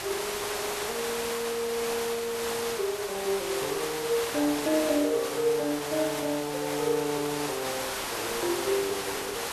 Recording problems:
hiss; SNR 3 dB

